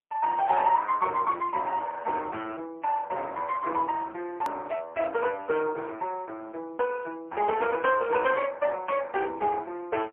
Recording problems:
phone line; 300 Hz to 2.8 kHz, AMR-NB, then MP3
click at an edit; at 4.5 s

